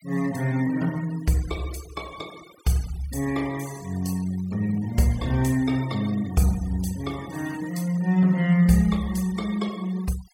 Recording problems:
noise reduction artefacts; signal-to-artefact ratio 19 dB

